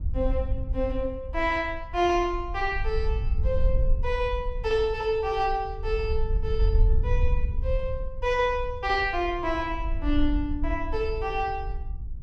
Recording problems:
wind on the microphone; below 62 Hz, SNR 3 dB

